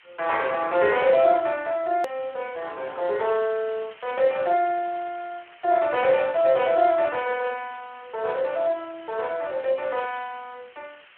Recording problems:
telephone audio; 370 Hz to 3.4 kHz, Speex
background hiss; SNR 25 dB
hard cut with a click; at 2 s

